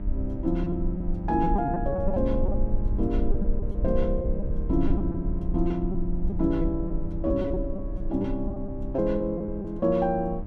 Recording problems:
hum; 50 Hz, harmonics up to 1 kHz, SNR 12 dB
rumble; below 54 Hz, strongest tone 18 Hz, SNR 4 dB
packet loss; 8% of the sound replaced, filled with repeated pitch periods

